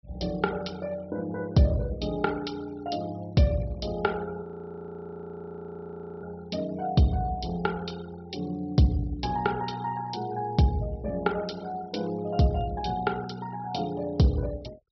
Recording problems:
treble missing; nothing above 5.6 kHz
denoising artefacts; signal-to-artefact ratio 22 dB
audio freezing; at 4.5 s for 2 s

